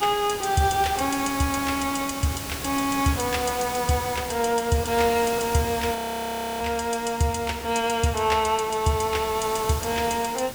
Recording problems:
background hiss; slope -2 dB per octave, SNR 9 dB
audio freezing; at 6 s for 0.5 s

